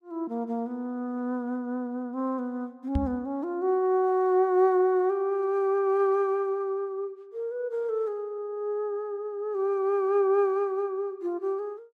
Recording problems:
microphone bump; at 3 s; peak +3 dB vs average level

